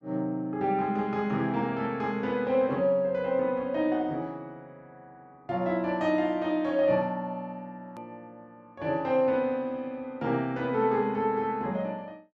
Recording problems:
click at an edit; at 8 s

